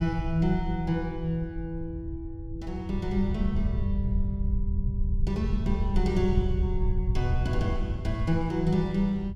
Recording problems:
low-frequency rumble; below 84 Hz, SNR 2 dB

